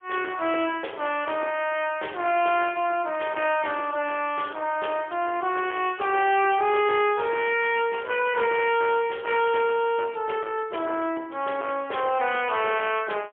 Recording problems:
phone line; 280 Hz to 3.3 kHz, AMR-NB, then MP3
distortion; soft clipping, signal-to-distortion ratio 12 dB

